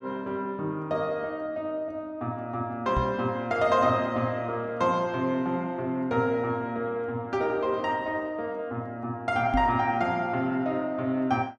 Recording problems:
microphone thump; at 3 s and at 9.5 s; peak +3 dB vs average level

